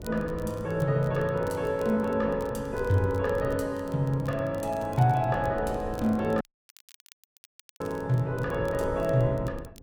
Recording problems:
wind on the microphone; below 270 Hz, SNR 15 dB
crackling; vinyl, SNR 27 dB
audio cutting out; at 6.5 s for 1.5 s

